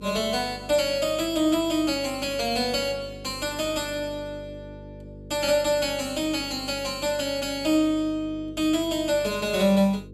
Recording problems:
hum; 50 Hz, harmonics up to 500 Hz, SNR 18 dB

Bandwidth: 14.5 kHz